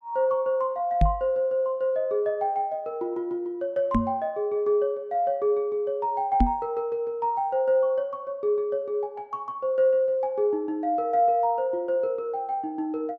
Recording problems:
microphone thump; at 1 s, at 4 s and at 6.5 s; peak +7 dB vs average level

